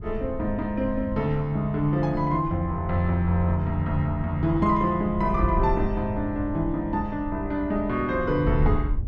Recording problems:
wind on the microphone; below 84 Hz, SNR 9 dB

